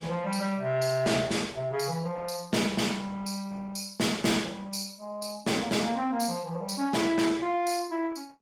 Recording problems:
codec artefacts; Opus, log-spectral distance 4 dB, nothing above 18.9 kHz
distorted audio; soft clipping, signal-to-distortion ratio 12 dB

